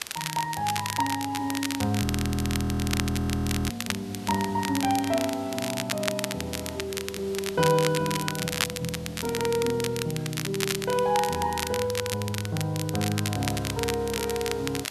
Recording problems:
hiss; slope -2 dB per octave, SNR 18 dB
crackling; vinyl, SNR 5 dB
frozen audio; at 2 s for 1.5 s

